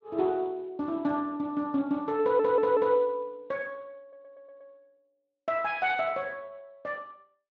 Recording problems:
codec artefacts; Speex, log-spectral distance 2 dB
stutter; at 2 s and at 4 s

